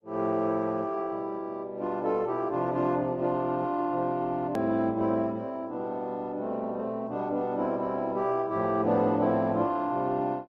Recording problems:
lossy compression; MP3, then Opus, log-spectral distance 2 dB, nothing above 13.1 kHz
edit click; at 4.5 s

